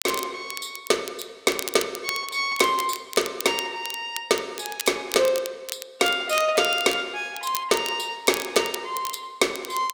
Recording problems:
crackling; vinyl, SNR 11 dB

